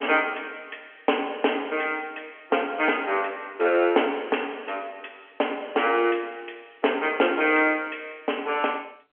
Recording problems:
phone line; 260 Hz to 3.2 kHz, G.711

